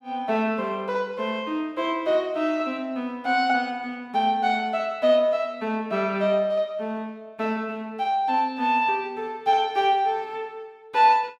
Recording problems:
none

